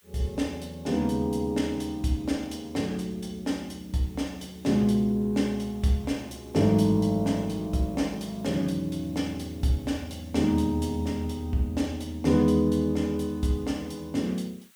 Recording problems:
hiss; SNR 29 dB

